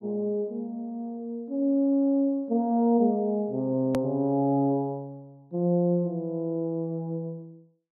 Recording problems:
click at an edit; at 4 s

